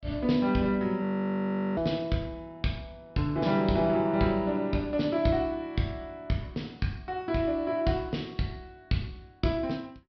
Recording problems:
treble missing; nothing above 5.5 kHz
audio freezing; at 1 s for 0.5 s

